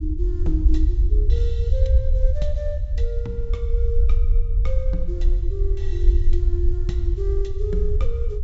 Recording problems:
treble missing; nothing above 8 kHz
rumble; below 60 Hz, SNR -9 dB

